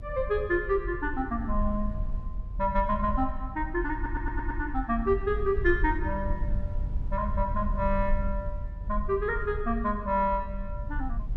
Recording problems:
rumble; below 64 Hz, SNR 5 dB
audio stuttering; at 4 s

